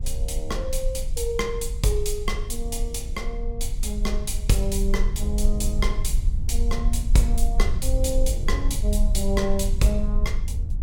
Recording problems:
rumble; below 52 Hz, strongest tone 22 Hz, SNR 0 dB

